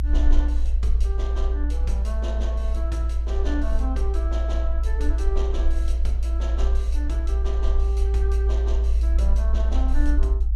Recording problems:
rumble; below 58 Hz, strongest tone 58 Hz, SNR -10 dB

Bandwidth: 14 kHz